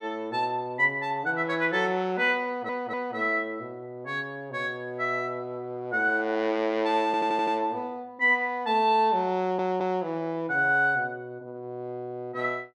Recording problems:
audio stuttering; at 2.5 s, at 7 s and at 9.5 s

